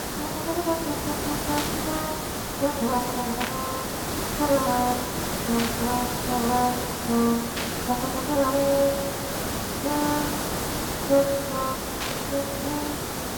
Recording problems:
background hiss; slope -5 dB per octave, SNR 1 dB
burst of static; 5 times, first at 1.5 s; peak +2 dB vs average level

